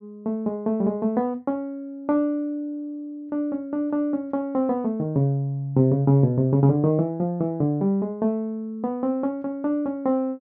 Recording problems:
none

